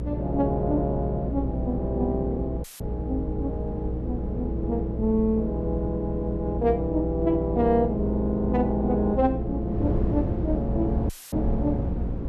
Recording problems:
hum; 60 Hz, harmonics up to 540 Hz, SNR 6 dB
wind noise; below 220 Hz, SNR 8 dB
dropout; at 2.5 s and at 11 s; filled with static

